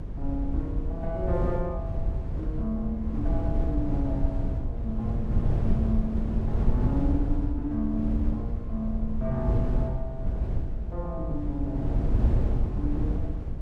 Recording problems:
low-frequency rumble; below 66 Hz, SNR 5 dB
wind on the microphone; below 120 Hz, SNR -2 dB

